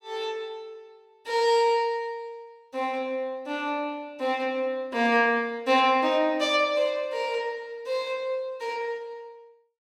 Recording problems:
none

